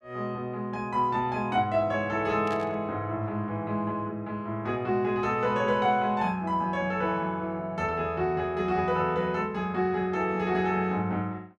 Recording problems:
static burst; at 2.5 s; peak -11 dB vs average level

